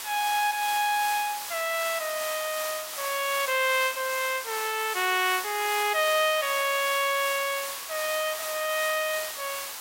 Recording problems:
background hiss; SNR 7 dB

